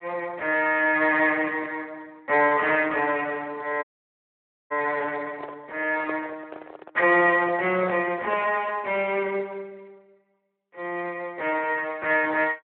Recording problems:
telephone audio; 300 Hz to 3.1 kHz, Speex
audio cutting out; at 4 s for 1 s
handling noise; from 5.5 to 9 s; peak -6 dB vs average level

